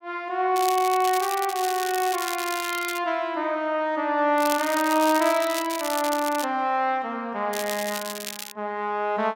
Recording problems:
crackling; from 0.5 to 3 s, from 4.5 to 6.5 s and from 7.5 to 8.5 s; loose cable, SNR 9 dB

